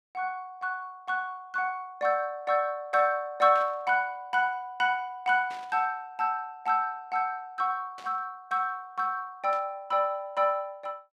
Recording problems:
burst of static; 4 times, first at 3.5 s; peak -13 dB vs average level

